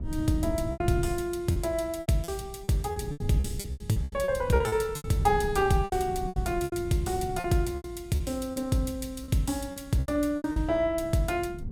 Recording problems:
wind on the microphone; below 160 Hz, SNR 9 dB
packet loss; 14% of the sound replaced, filled with repeated pitch periods

